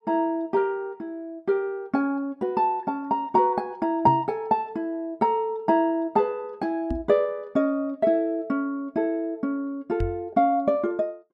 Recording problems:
microphone bump; at 4 s, at 7 s and at 10 s; peak 0 dB vs average level

